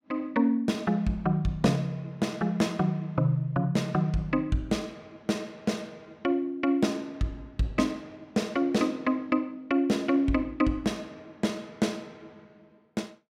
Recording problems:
none

